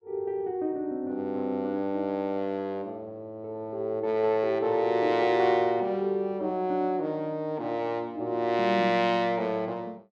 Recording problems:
none

